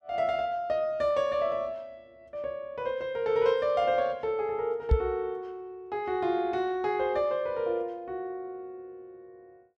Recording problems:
microphone bump; at 5 s; peak +9 dB vs average level

